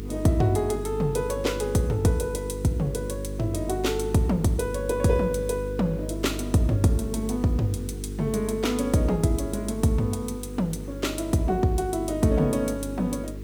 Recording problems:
electrical hum; 50 Hz, harmonics up to 450 Hz, SNR 9 dB
hiss; SNR 28 dB

